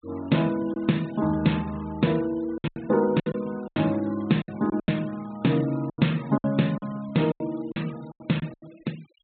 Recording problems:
treble missing; nothing above 4 kHz
denoising artefacts; signal-to-artefact ratio 22 dB
lost packets; 11% of the sound replaced, filled with silence

